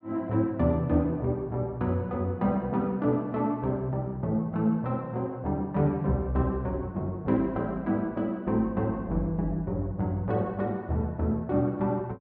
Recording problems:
none

